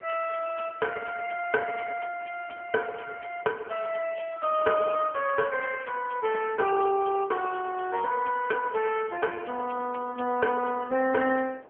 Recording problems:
telephone audio; 260 Hz to 3 kHz, AMR-NB
wind on the microphone; below 710 Hz, SNR 22 dB

